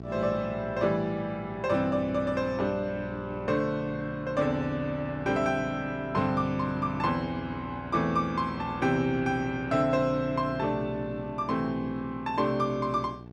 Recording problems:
hum; 60 Hz, harmonics up to 1.1 kHz, SNR 13 dB

